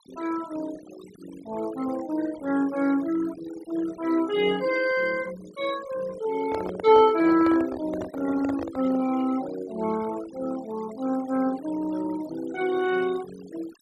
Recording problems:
noise reduction artefacts; signal-to-artefact ratio 18 dB
handling noise; from 6.5 to 9 s; peak -3 dB vs average level

